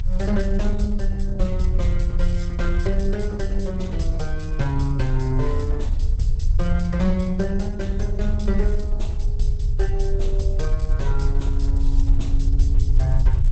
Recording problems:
lossy compression; Opus, log-spectral distance 2 dB, nothing above 8.2 kHz
rumble; below 64 Hz, strongest tone 26 Hz, SNR -3 dB

